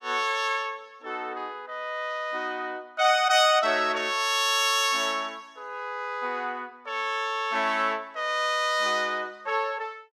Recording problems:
none

